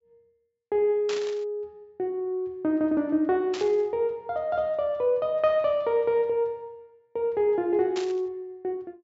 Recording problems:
treble cut off; nothing above 8 kHz
static burst; at 1 s, at 3.5 s and at 8 s; peak -5 dB vs average level

